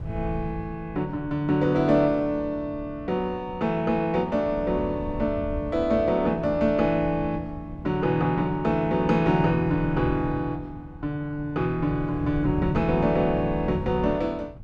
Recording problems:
wind on the microphone; below 140 Hz, SNR 13 dB

